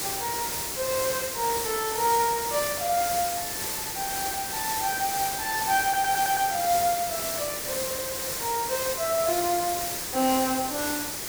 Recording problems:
hiss; SNR 1 dB
stutter; at 6 s and at 8 s

